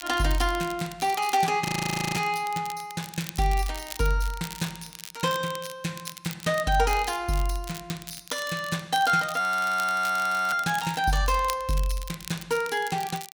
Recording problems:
crackle; vinyl, SNR 14 dB
frozen audio; at 1.5 s for 0.5 s and at 9.5 s for 1 s

